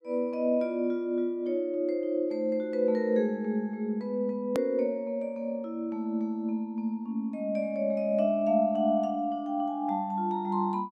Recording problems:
click at an edit; at 4.5 s

